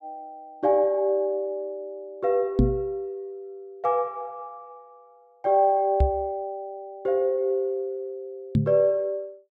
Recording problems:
microphone bump; at 2.5 s, at 6 s and at 8.5 s; peak +8 dB vs average level

